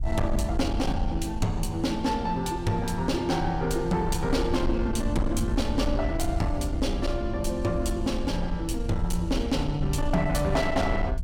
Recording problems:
distorted audio; soft clipping, signal-to-distortion ratio 11 dB
low-frequency rumble; below 76 Hz, SNR 5 dB

